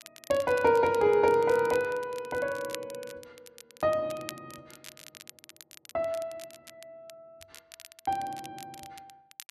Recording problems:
crackle; vinyl, SNR 20 dB

